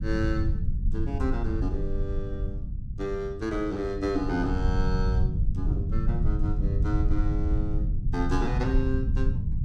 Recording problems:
rumble; below 92 Hz, SNR -3 dB

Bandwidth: 16 kHz